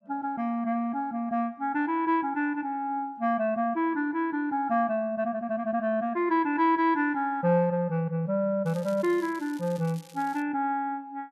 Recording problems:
crackle; from 8.5 to 10 s; loose cable, SNR 23 dB

